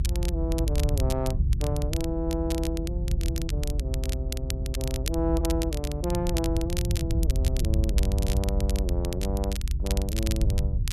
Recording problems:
hum; 50 Hz, harmonics up to 400 Hz, SNR 12 dB
rumble; below 82 Hz, SNR -4 dB
crackling; vinyl, SNR 7 dB

